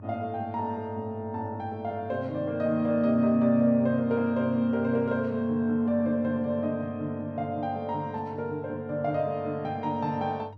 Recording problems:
hum; 50 Hz, harmonics up to 600 Hz, SNR 17 dB

